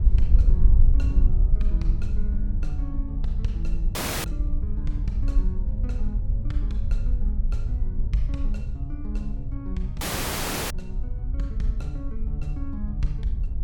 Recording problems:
wind on the microphone; below 56 Hz, SNR -8 dB
dropout; at 4 s and at 10 s for 0.5 s

